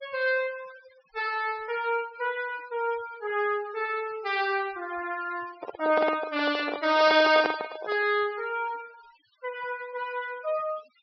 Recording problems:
low-pass filter; nothing above 5.5 kHz
denoising artefacts; signal-to-artefact ratio 19 dB
microphone handling noise; from 5.5 to 8 s; peak +2 dB vs average level

